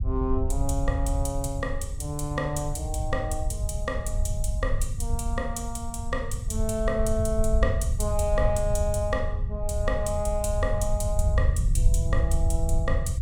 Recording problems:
rumble; below 82 Hz, SNR -1 dB

